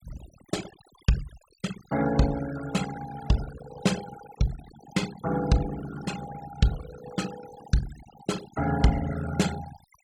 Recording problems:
denoising artefacts; signal-to-artefact ratio 13 dB

